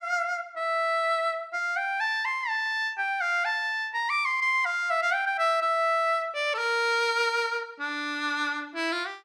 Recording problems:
none

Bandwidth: 13 kHz